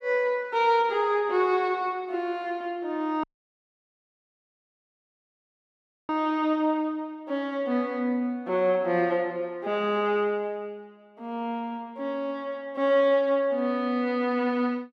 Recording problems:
audio cutting out; at 3 s for 3 s

